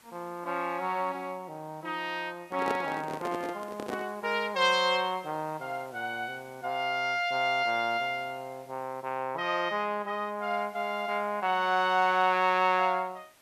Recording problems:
background hiss; slope -2 dB per octave, SNR 28 dB
handling noise; from 2.5 to 4 s; peak 0 dB vs average level

